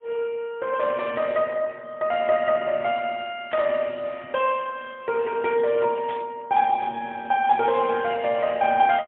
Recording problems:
telephone audio; 150 Hz to 3.6 kHz, AMR-NB, then MP3
static burst; at 3.5 s and at 6 s; peak -10 dB vs average level

